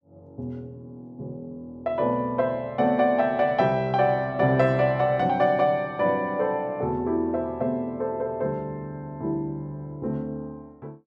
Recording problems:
none

